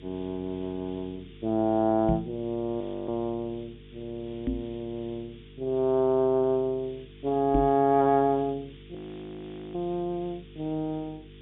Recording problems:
treble missing; nothing above 3.6 kHz
hum; 50 Hz, harmonics up to 450 Hz, SNR 22 dB
hiss; SNR 28 dB
microphone thump; at 2 s, at 4.5 s and at 7.5 s; peak +3 dB vs average level
audio freezing; at 3 s and at 9 s for 1 s

